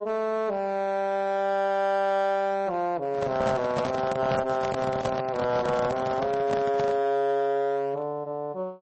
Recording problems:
codec artefacts; MP3, then MP3, log-spectral distance 2 dB
distortion; hard clipping, uneven, signal-to-distortion ratio 11 dB
handling noise; from 3 to 7 s; peak +1 dB vs average level

